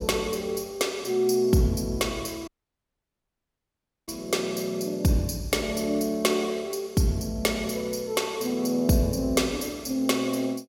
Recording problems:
dropout; at 2.5 s for 1.5 s

